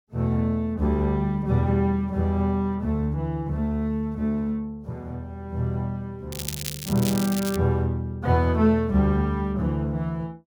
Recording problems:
crackling; from 6.5 to 7.5 s; loose cable, SNR 9 dB

